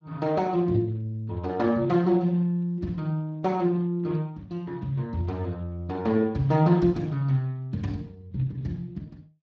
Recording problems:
lossy codec; Speex, log-spectral distance 2 dB

